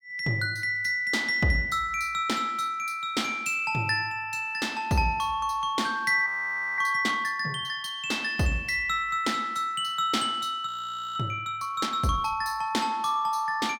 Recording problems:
audio freezing; at 6.5 s for 0.5 s and at 11 s

